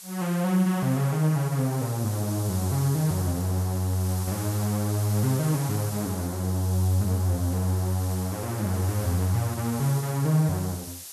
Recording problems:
background hiss; SNR 12 dB

